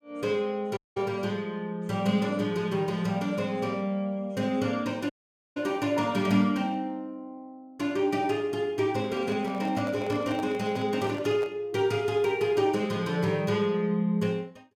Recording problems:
dropout; at 1 s and at 5 s
microphone handling noise; from 9 to 12 s; peak -7 dB vs average level

